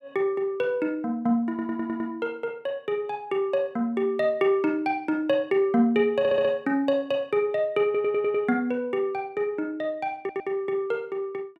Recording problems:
stutter; 4 times, first at 1.5 s

